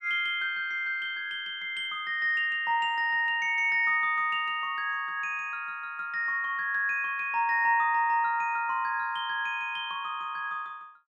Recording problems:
none

